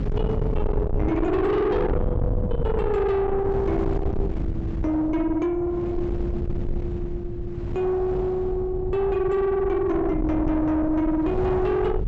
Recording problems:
treble missing; nothing above 7.9 kHz
distorted audio; soft clipping, signal-to-distortion ratio 7 dB
rumble; below 260 Hz, SNR 5 dB
wind on the microphone; below 320 Hz, SNR 11 dB

